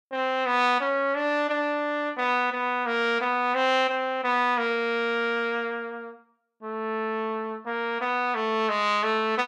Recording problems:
none

